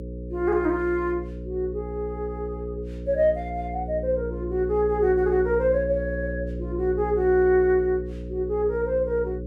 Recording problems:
hum; 60 Hz, harmonics up to 540 Hz, SNR 9 dB

